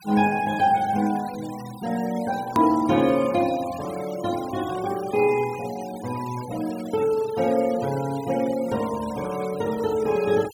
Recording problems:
denoising artefacts; signal-to-artefact ratio 18 dB
click at an edit; at 2.5 s

